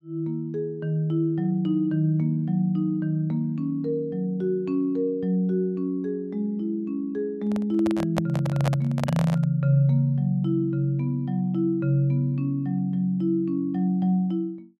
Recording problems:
microphone handling noise; from 7.5 to 9.5 s; peak +1 dB vs average level

